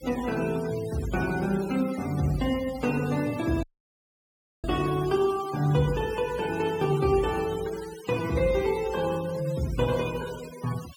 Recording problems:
denoising artefacts; signal-to-artefact ratio 16 dB
dropout; at 3.5 s for 1 s

